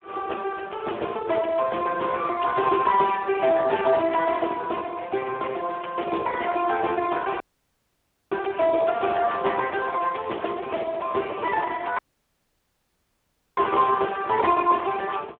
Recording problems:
telephone audio; 260 Hz to 3.3 kHz, Speex
dropout; at 7.5 s for 1 s and at 12 s for 1.5 s

